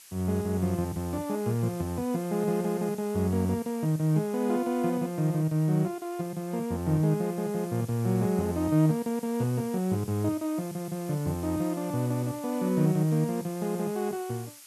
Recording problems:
hiss; slope +3 dB per octave, SNR 19 dB

